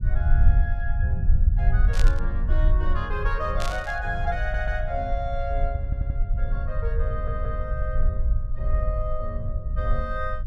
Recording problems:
low-frequency rumble; below 66 Hz, strongest tone 22 Hz, SNR -6 dB
static burst; at 2 s and at 3.5 s; peak +3 dB vs average level
audio stuttering; at 4.5 s, at 6 s and at 7 s

